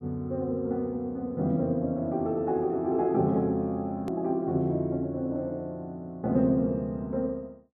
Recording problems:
click at an edit; at 4 s

